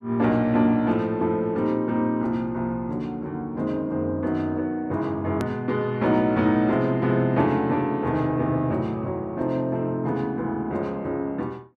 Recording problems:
click at an edit; at 5.5 s

